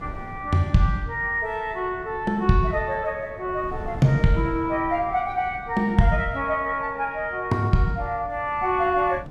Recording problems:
wind noise; below 250 Hz, SNR 18 dB

